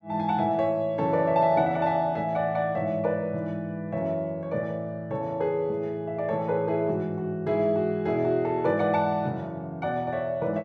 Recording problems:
none

